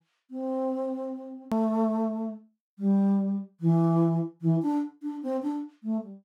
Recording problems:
edit click; at 1.5 s

